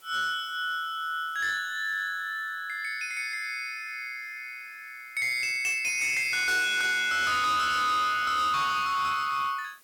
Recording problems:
distorted audio; hard clipping, uneven, signal-to-distortion ratio 11 dB
background hiss; slope 0 dB per octave, SNR 29 dB

